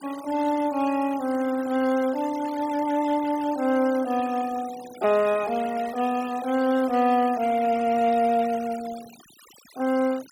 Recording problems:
denoising artefacts; signal-to-artefact ratio 19 dB

